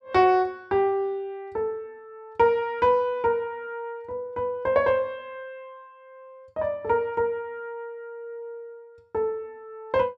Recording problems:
none

